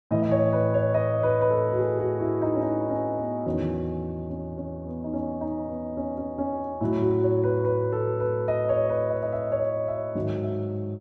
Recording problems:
none

